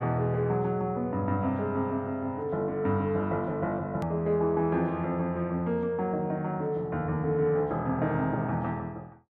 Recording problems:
edit click; at 4 s

